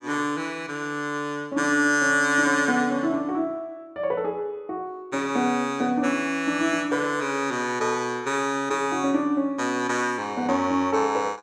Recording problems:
none

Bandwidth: 16.5 kHz